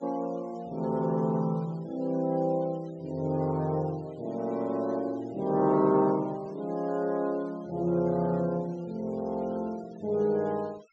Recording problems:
treble missing; nothing above 8 kHz
noise reduction artefacts; signal-to-artefact ratio 26 dB

